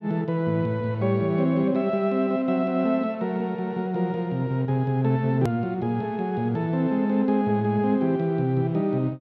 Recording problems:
click at an edit; at 5.5 s

